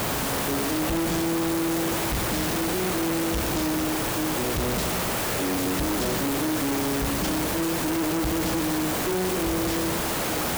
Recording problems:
distorted audio; hard clipping, signal-to-distortion ratio 7 dB
hiss; slope -4 dB per octave, SNR -1 dB

